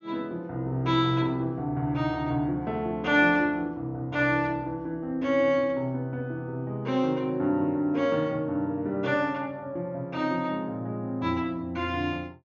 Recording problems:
low-pass filter; nothing above 6.9 kHz

